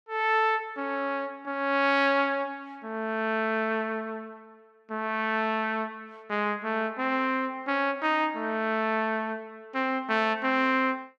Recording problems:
none

